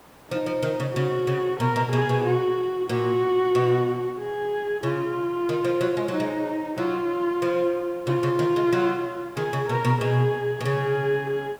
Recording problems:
background hiss; SNR 25 dB

